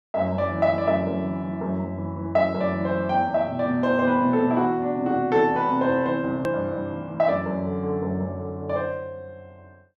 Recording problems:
hard cut with a click; at 6.5 s

